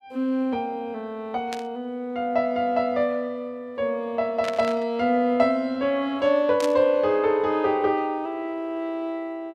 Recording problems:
burst of static; at 1.5 s, at 4.5 s and at 6.5 s; peak -5 dB vs average level

